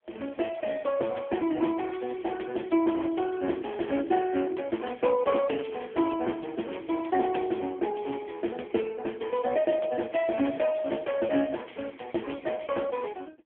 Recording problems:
telephone audio; 240 Hz to 3.3 kHz, AMR-NB

